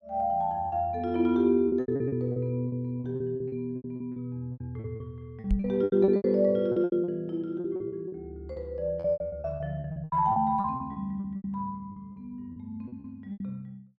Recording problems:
lost packets; 17% of the sound replaced, filled with repeated pitch periods
microphone bump; at 5.5 s; peak +4 dB vs average level

